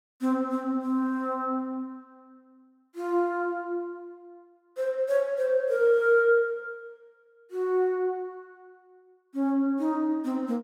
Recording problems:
none

